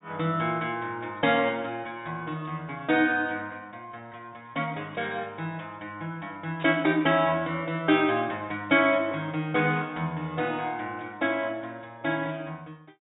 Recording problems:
treble cut off; nothing above 3.8 kHz
burst of static; at 6.5 s; peak -10 dB vs average level

